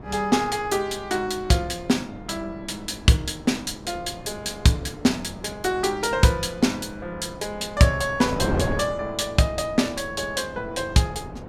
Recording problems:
wind noise; below 500 Hz, SNR 12 dB

